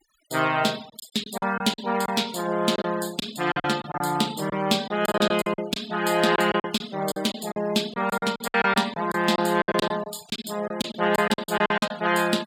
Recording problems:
noise reduction artefacts; signal-to-artefact ratio 19 dB
packet loss; 13% of the sound replaced, filled with silence

